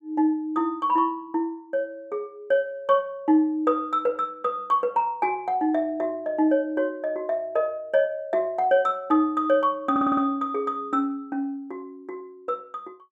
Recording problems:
audio stuttering; at 10 s

